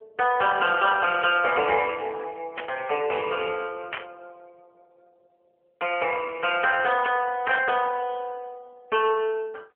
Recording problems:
phone line; 340 Hz to 3.2 kHz, AMR-NB
burst of static; at 2.5 s, at 4 s and at 7.5 s; peak -3 dB vs average level

